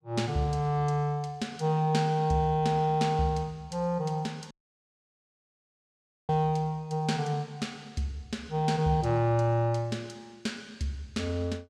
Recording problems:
audio cutting out; at 4.5 s for 2 s

